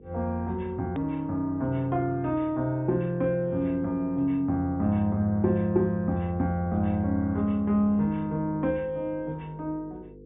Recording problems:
low-pass filter; nothing above 3.7 kHz
electrical hum; 50 Hz, harmonics up to 500 Hz, SNR 22 dB
edit click; at 1 s

